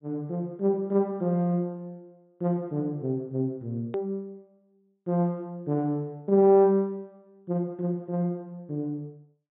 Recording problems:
low-pass filter; nothing above 4 kHz
click at an edit; at 4 s

